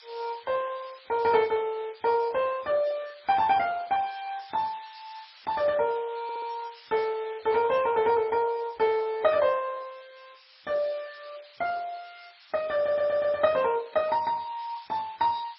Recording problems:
lossy compression; MP3, then MP2, log-spectral distance 11 dB, nothing above 4.9 kHz
hiss; SNR 23 dB
stutter; at 6 s and at 13 s

